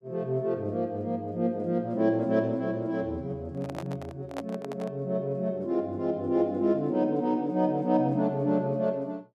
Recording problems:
microphone handling noise; from 3.5 to 5 s; peak -5 dB vs average level

